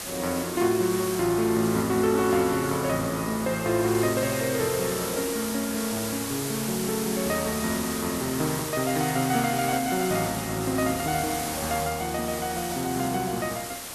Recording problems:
background hiss; slope -2 dB per octave, SNR 6 dB

